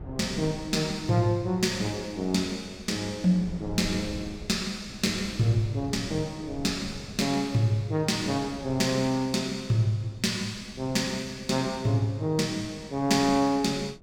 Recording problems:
wind on the microphone; below 190 Hz, SNR 18 dB

